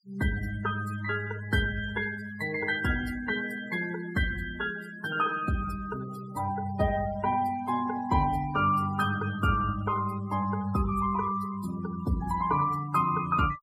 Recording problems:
denoising artefacts; signal-to-artefact ratio 17 dB

